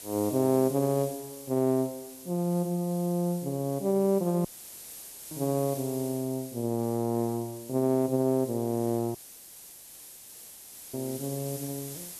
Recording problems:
hiss; SNR 14 dB
dropout; at 4.5 s for 1 s and at 9 s for 2 s

